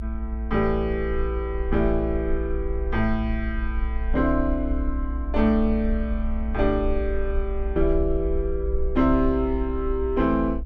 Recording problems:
rumble; below 58 Hz, SNR 4 dB

